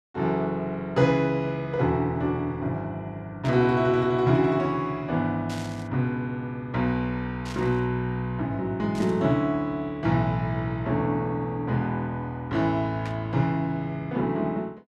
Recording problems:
burst of static; 5 times, first at 3.5 s; peak -10 dB vs average level

